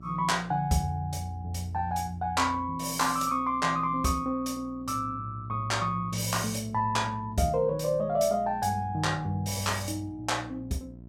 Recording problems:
hum; 60 Hz, harmonics up to 720 Hz, SNR 19 dB

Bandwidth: 16.5 kHz